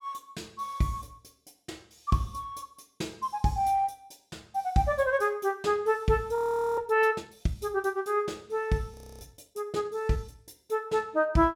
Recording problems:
audio freezing; at 6.5 s and at 9 s

